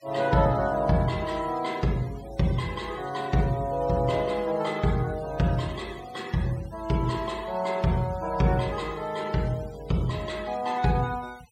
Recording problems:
denoising artefacts; signal-to-artefact ratio 21 dB

